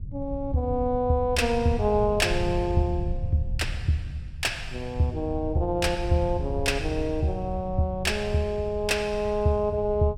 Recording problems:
rumble; below 110 Hz, SNR 9 dB

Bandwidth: 16 kHz